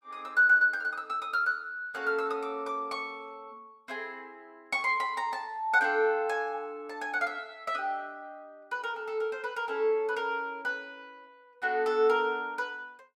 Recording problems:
none

